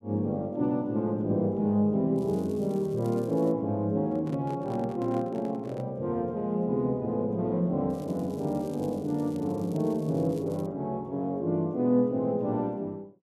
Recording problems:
crackle; from 2 to 3.5 s and from 8 to 11 s; loose cable, SNR 27 dB
microphone handling noise; from 4 to 6 s; peak -10 dB vs average level

